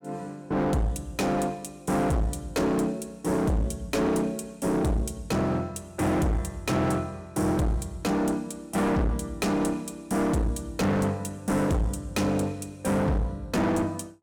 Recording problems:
distortion; hard clipping, uneven, signal-to-distortion ratio 6 dB

